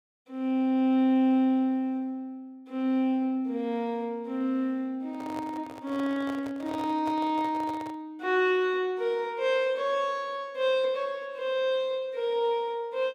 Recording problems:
handling noise; from 5 to 8 s; peak -8 dB vs average level

